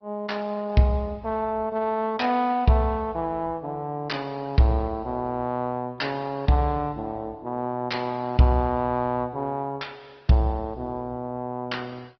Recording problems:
treble cut off; nothing above 5.3 kHz
codec artefacts; Opus, log-spectral distance 2 dB

